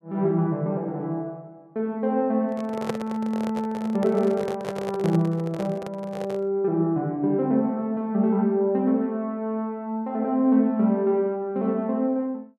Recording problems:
handling noise; from 2.5 to 6.5 s; peak +1 dB vs average level

